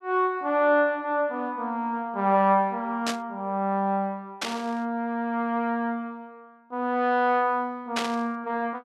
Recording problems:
burst of static; at 3 s, at 4.5 s and at 8 s; peak +1 dB vs average level

